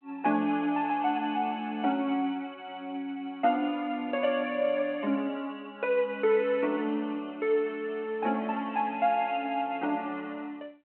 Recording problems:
telephone audio; 240 Hz to 3.3 kHz, G.726

